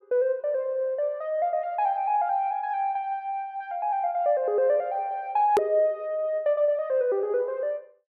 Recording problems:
hard cut with a click; at 5.5 s

